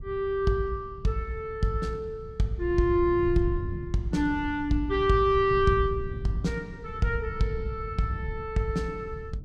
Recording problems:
wind on the microphone; below 120 Hz, SNR 11 dB

